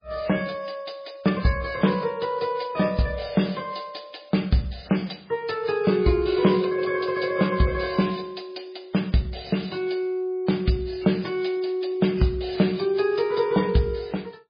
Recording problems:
codec artefacts; MP3, log-spectral distance 5 dB, nothing above 5 kHz

